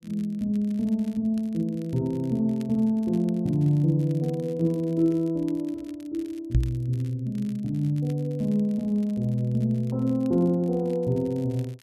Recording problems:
crackle; vinyl, SNR 29 dB
knock on the microphone; at 6.5 s; peak +6 dB vs average level

